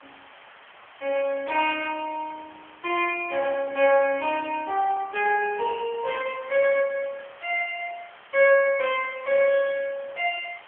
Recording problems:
telephone audio; 320 Hz to 3.3 kHz, AMR-NB
hiss; SNR 23 dB

